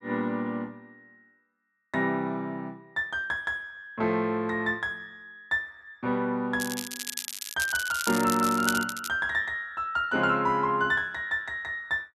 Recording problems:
crackling; from 6.5 to 9 s; loose cable, SNR 6 dB

